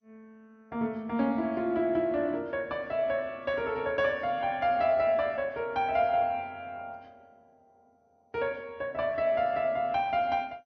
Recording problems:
codec artefacts; MP3, then MP2, log-spectral distance 2 dB, nothing above 5.2 kHz

